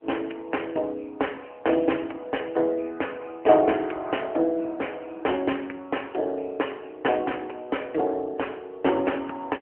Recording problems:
phone line; 280 Hz to 3.1 kHz, AMR-NB

